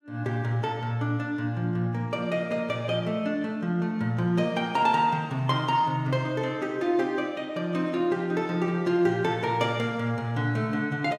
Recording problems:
none

